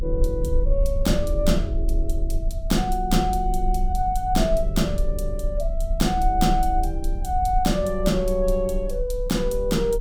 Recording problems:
low-frequency rumble; below 42 Hz, strongest tone 30 Hz, SNR 4 dB

